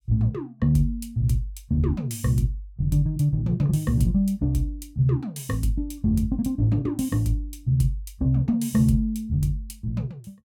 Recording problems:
none

